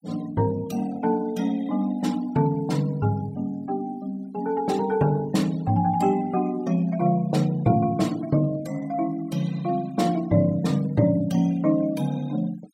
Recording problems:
denoising artefacts; signal-to-artefact ratio 24 dB

